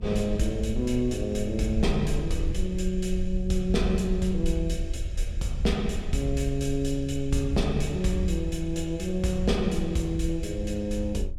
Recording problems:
rumble; below 72 Hz, SNR 7 dB

